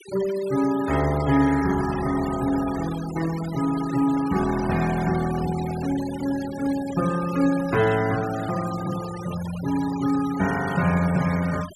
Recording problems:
noise reduction artefacts; signal-to-artefact ratio 13 dB

